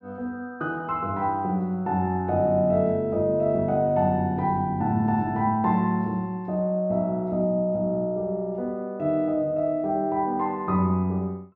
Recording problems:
none

